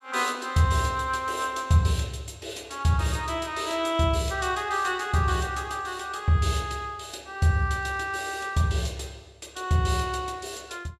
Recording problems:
none

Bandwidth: 14.5 kHz